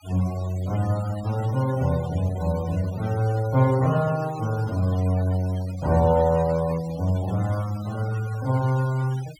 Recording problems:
noise reduction artefacts; signal-to-artefact ratio 19 dB

